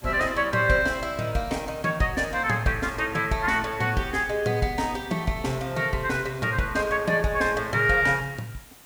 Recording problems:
hiss; slope -2 dB per octave, SNR 24 dB

